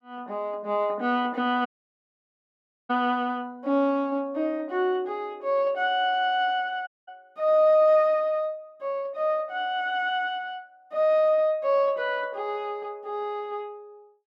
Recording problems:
audio cutting out; at 1.5 s for 1 s and at 7 s

